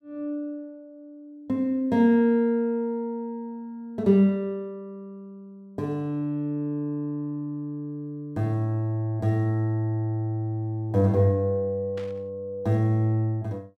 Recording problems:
static burst; at 12 s; peak -14 dB vs average level

